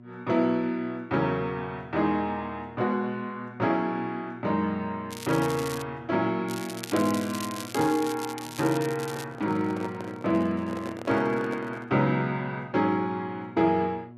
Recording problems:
hum; 60 Hz, harmonics up to 1.1 kHz, SNR 18 dB
crackling; at 5 s and from 6.5 to 9.5 s; loose cable, SNR 12 dB
microphone handling noise; from 9 to 12 s; peak -6 dB vs average level

